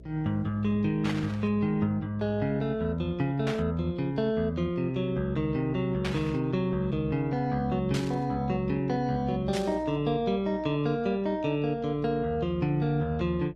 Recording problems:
lossy codec; Opus, log-spectral distance 2 dB
hum; 60 Hz, harmonics up to 660 Hz, SNR 22 dB
burst of static; 5 times, first at 1 s; peak -3 dB vs average level

